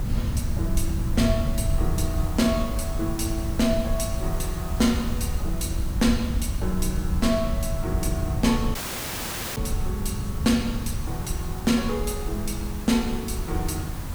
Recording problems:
hum; 50 Hz, harmonics up to 1.2 kHz, SNR 15 dB
hiss; SNR 14 dB
rumble; below 68 Hz, SNR 6 dB
wind noise; below 140 Hz, SNR 6 dB
dropout; at 9 s for 1 s

